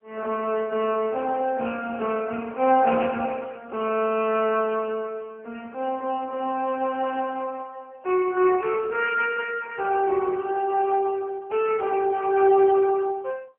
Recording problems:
phone line; 240 Hz to 3.1 kHz, AMR-NB

